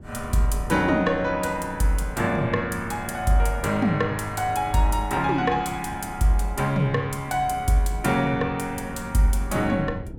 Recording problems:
wind noise; below 200 Hz, SNR 16 dB

